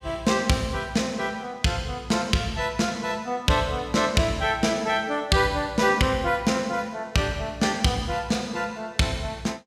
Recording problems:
none

